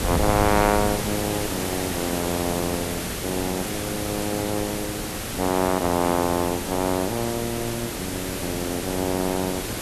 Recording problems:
hiss; slope -3 dB per octave, SNR 3 dB
wind on the microphone; below 140 Hz, SNR 12 dB

